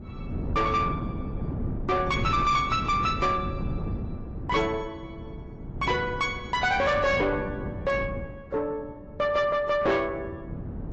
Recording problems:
lossy compression; AAC, log-spectral distance 2 dB, nothing above 7.8 kHz
distorted audio; soft clipping, signal-to-distortion ratio 12 dB
wind noise; below 260 Hz, SNR 8 dB

